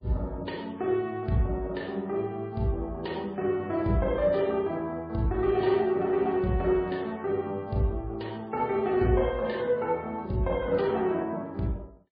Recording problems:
lossy compression; MP3, log-spectral distance 2 dB, nothing above 4.4 kHz

